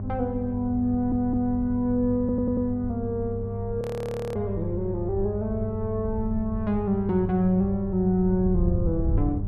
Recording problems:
mains hum; 50 Hz, harmonics up to 600 Hz, SNR 8 dB
wind noise; below 88 Hz, SNR 9 dB
audio stuttering; at 1 s and at 2 s
audio freezing; at 4 s for 0.5 s

